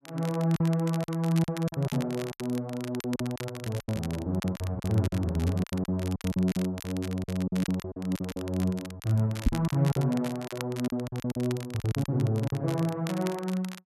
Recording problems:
crackling; vinyl, SNR 15 dB
packet loss; 13% of the sound replaced, filled with silence
microphone thump; at 9.5 s; peak +8 dB vs average level

